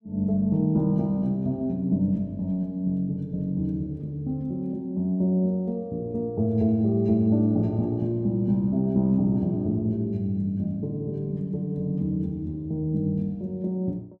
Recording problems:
none

